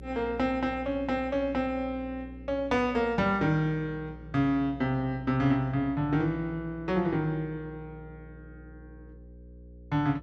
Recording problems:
electrical hum; 60 Hz, harmonics up to 540 Hz, SNR 18 dB

